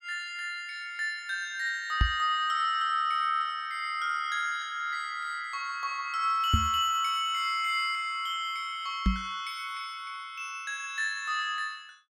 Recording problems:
knock on the microphone; at 2 s, at 6.5 s and at 9 s; peak +8 dB vs average level

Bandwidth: 17 kHz